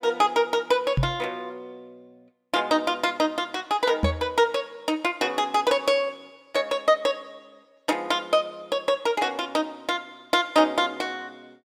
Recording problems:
microphone bump; at 1 s and at 4 s; peak +5 dB vs average level

